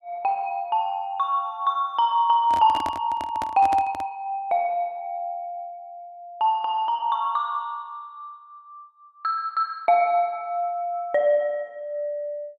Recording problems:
microphone handling noise; from 2.5 to 4 s; peak -4 dB vs average level

